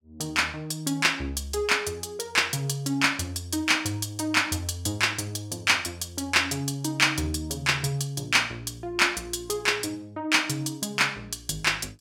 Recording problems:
none

